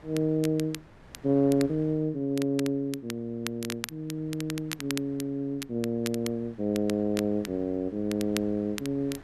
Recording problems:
wind on the microphone; below 930 Hz, SNR 24 dB
crackle; vinyl, SNR 12 dB

